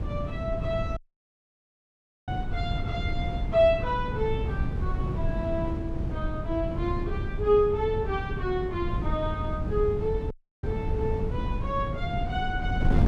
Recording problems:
wind on the microphone; below 150 Hz, SNR 2 dB
audio cutting out; at 1 s for 1.5 s and at 10 s

